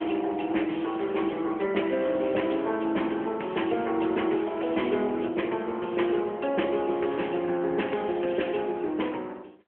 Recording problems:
phone line; 260 Hz to 3.2 kHz, AMR-NB

